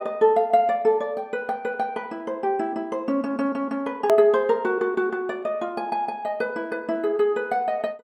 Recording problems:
hard cut with a click; at 4 s

